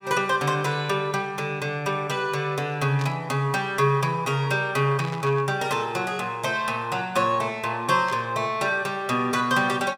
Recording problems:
burst of static; at 3 s, at 5 s and at 8 s; peak -9 dB vs average level

